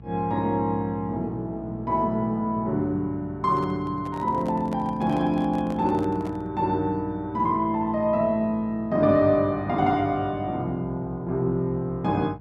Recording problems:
hum; 60 Hz, harmonics up to 900 Hz, SNR 18 dB
handling noise; from 3.5 to 6.5 s; peak -10 dB vs average level

